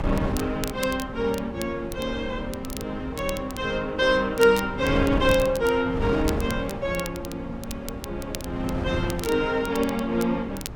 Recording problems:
mains hum; 50 Hz, harmonics up to 600 Hz, SNR 23 dB
wind noise; below 290 Hz, SNR 9 dB
crackling; vinyl, SNR 15 dB

